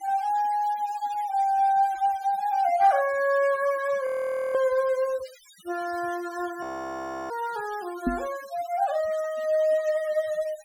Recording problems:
denoising artefacts; signal-to-artefact ratio 21 dB
frozen audio; at 4 s and at 6.5 s for 0.5 s
microphone thump; at 8 s; peak +3 dB vs average level

